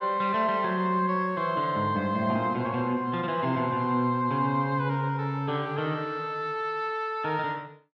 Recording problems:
none

